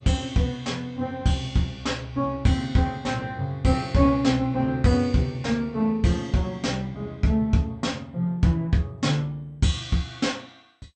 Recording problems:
codec artefacts; MP2, log-spectral distance 2 dB, nothing above 8.5 kHz

